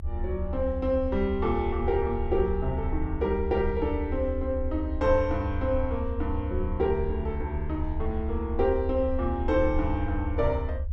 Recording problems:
rumble; below 78 Hz, SNR 4 dB

